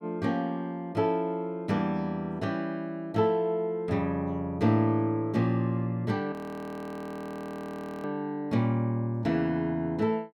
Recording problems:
audio freezing; at 6.5 s for 1.5 s

